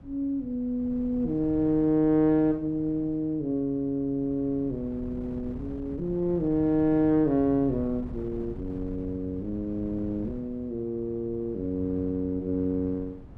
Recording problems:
wind on the microphone; below 200 Hz, SNR 16 dB

